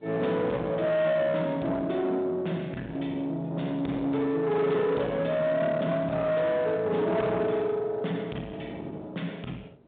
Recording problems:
telephone audio; 190 Hz to 3.7 kHz, G.726
distortion; soft clipping, signal-to-distortion ratio 10 dB
wind on the microphone; below 700 Hz, SNR 17 dB

